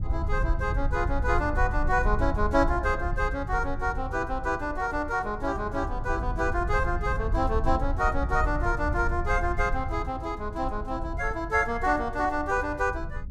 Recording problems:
rumble; below 76 Hz, SNR 5 dB

